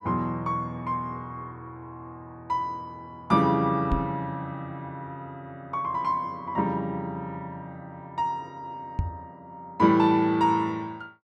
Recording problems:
knock on the microphone; at 4 s and at 9 s; peak +4 dB vs average level

